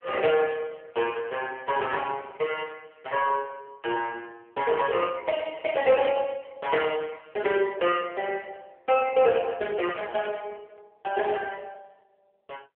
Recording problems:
phone line; 320 Hz to 3.3 kHz, AMR-NB

